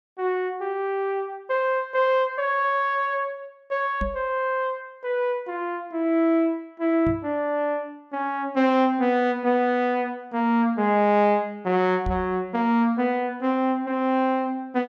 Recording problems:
knock on the microphone; at 4 s, at 7 s and at 12 s; peak -2 dB vs average level

